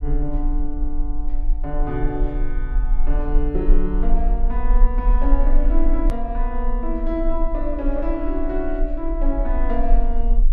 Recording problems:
rumble; below 36 Hz, strongest tone 20 Hz, SNR -3 dB
edit click; at 6 s

